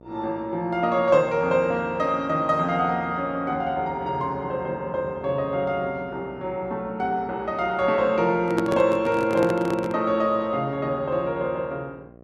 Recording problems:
electrical hum; 60 Hz, harmonics up to 1.3 kHz, SNR 23 dB
handling noise; from 8.5 to 10 s; peak 0 dB vs average level

